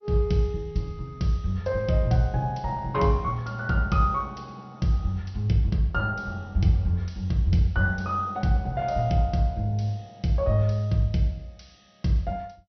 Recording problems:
lossy codec; MP2, log-spectral distance 2 dB, nothing above 5.8 kHz

